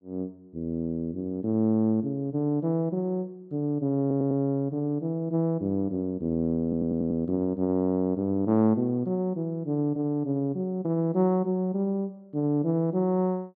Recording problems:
audio stuttering; at 4 s and at 6.5 s

